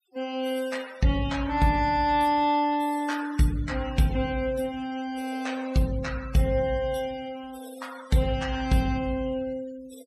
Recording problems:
noise reduction artefacts; signal-to-artefact ratio 18 dB

